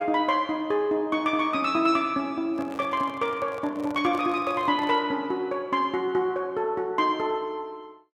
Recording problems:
microphone handling noise; from 2.5 to 5 s; peak -10 dB vs average level

